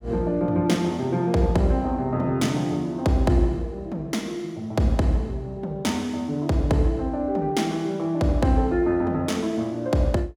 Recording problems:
none

